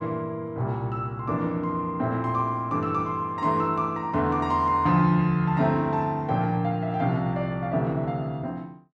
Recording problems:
none

